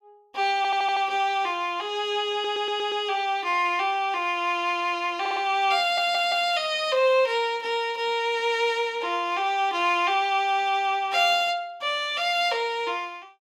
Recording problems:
stutter; 4 times, first at 0.5 s

